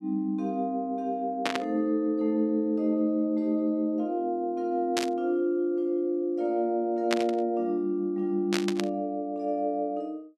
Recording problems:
burst of static; 4 times, first at 1.5 s; peak +3 dB vs average level

